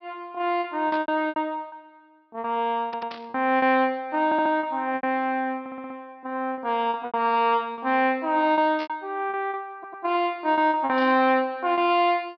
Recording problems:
treble missing; nothing above 5.5 kHz
packet loss; 10% of the sound replaced, filled with repeated pitch periods
burst of static; 4 times, first at 1 s; peak -11 dB vs average level
stutter; 4 times, first at 3 s

